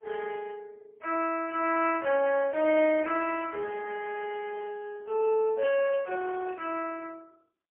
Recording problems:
telephone audio; 340 Hz to 2.9 kHz, AMR-NB, then MP3

